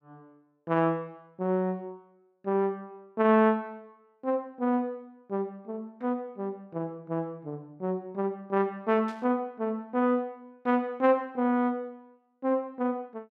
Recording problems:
burst of static; at 9 s; peak -16 dB vs average level

